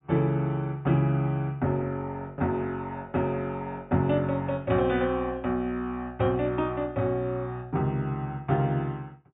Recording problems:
low-pass filter; nothing above 4 kHz

